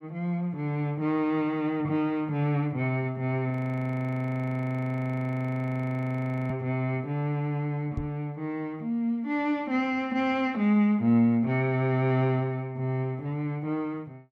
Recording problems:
audio freezing; at 3.5 s for 3 s
microphone thump; at 8 s; peak -2 dB vs average level

